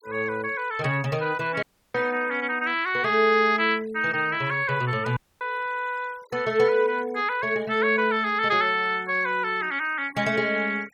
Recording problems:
denoising artefacts; signal-to-artefact ratio 24 dB
dropout; at 1.5 s and at 5 s

